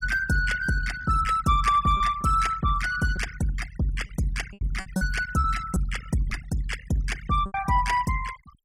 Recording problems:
noise reduction artefacts; signal-to-artefact ratio 14 dB
packet loss; 5% of the sound replaced, filled with repeated pitch periods

